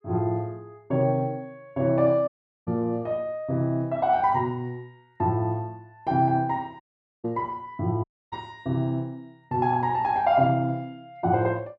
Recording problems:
dropout; at 2.5 s, at 7 s and at 8 s

